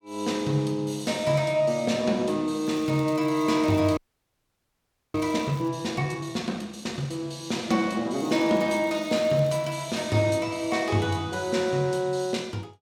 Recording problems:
crackling; from 2.5 to 5.5 s and from 8 to 9.5 s; loose cable, SNR 26 dB
frozen audio; at 4 s for 1 s

